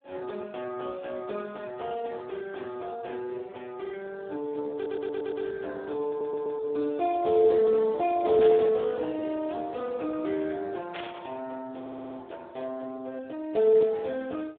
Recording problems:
telephone audio; 260 Hz to 2.1 kHz, Speex
audio stuttering; at 5 s, at 6 s and at 12 s
burst of static; at 8.5 s and at 11 s; peak -5 dB vs average level

